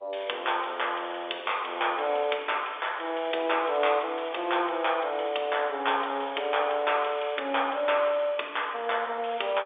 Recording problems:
phone line; 320 Hz to 3.6 kHz, G.711

